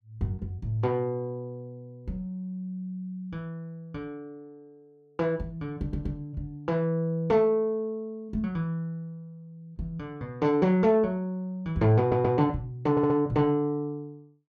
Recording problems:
stutter; at 6 s, at 12 s and at 13 s

